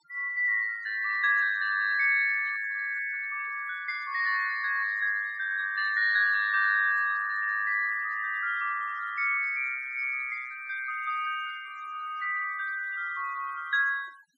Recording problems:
denoising artefacts; signal-to-artefact ratio 21 dB

